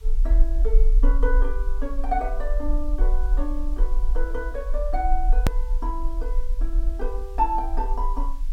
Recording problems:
hiss; slope -1 dB per octave, SNR 25 dB
low-frequency rumble; below 40 Hz, SNR -5 dB
edit click; at 5.5 s

